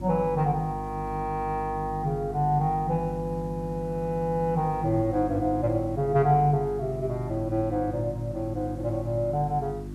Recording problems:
hum; 50 Hz, harmonics up to 350 Hz, SNR 10 dB
hiss; slope -5 dB per octave, SNR 26 dB

